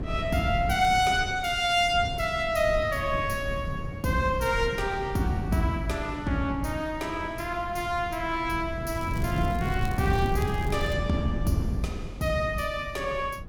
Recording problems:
wind on the microphone; below 180 Hz, SNR 8 dB
crackle; at 1 s and from 9 to 11 s; loose cable, SNR 22 dB

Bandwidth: 18 kHz